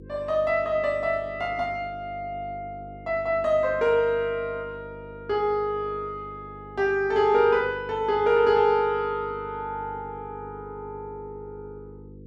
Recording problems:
hum; 50 Hz, harmonics up to 500 Hz, SNR 20 dB

